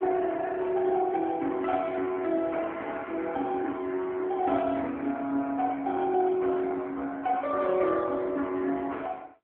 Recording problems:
telephone audio; 220 Hz to 3.6 kHz, AMR-NB

